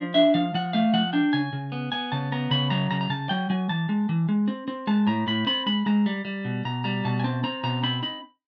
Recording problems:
none

